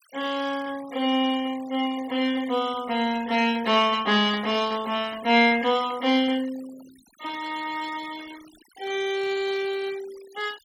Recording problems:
denoising artefacts; signal-to-artefact ratio 20 dB

